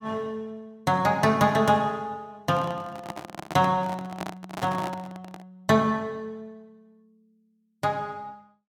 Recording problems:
handling noise; from 2.5 to 5.5 s; peak -3 dB vs average level

